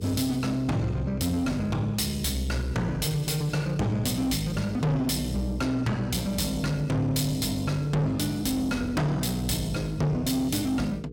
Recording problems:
distorted audio; soft clipping, signal-to-distortion ratio 6 dB
hum; 60 Hz, harmonics up to 480 Hz, SNR 16 dB

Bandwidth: 17.5 kHz